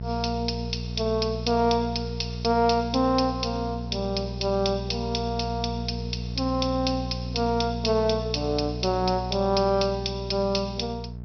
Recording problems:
treble missing; nothing above 5.8 kHz
hum; 60 Hz, harmonics up to 660 Hz, SNR 8 dB

